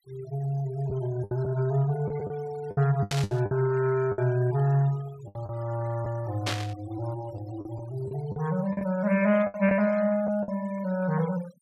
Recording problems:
denoising artefacts; signal-to-artefact ratio 20 dB
packet loss; 8% of the sound replaced, filled with the last packet
static burst; at 3 s and at 6.5 s; peak +2 dB vs average level

